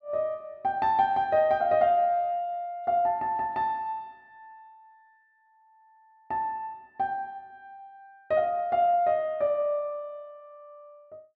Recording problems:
none

